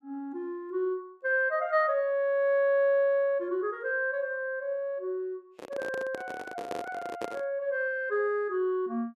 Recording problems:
microphone handling noise; from 5.5 to 7.5 s; peak -2 dB vs average level

